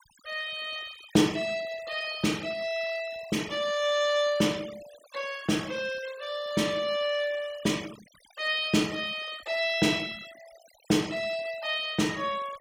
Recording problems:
denoising artefacts; signal-to-artefact ratio 18 dB

